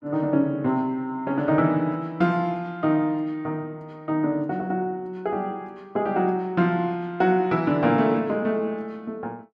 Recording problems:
none

